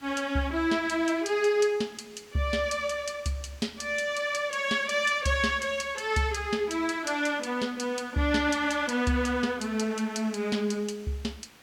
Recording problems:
background hiss; slope -2 dB per octave, SNR 25 dB

